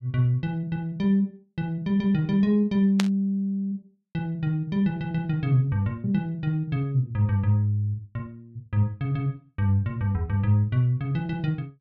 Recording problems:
static burst; at 3 s; peak +1 dB vs average level

